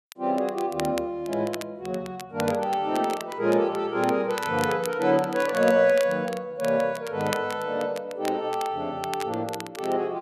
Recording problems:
crackle; vinyl, SNR 15 dB

